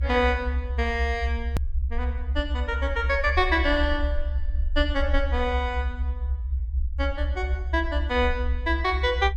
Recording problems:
rumble; below 70 Hz, strongest tone 66 Hz, SNR 2 dB
hard cut with a click; at 1.5 s

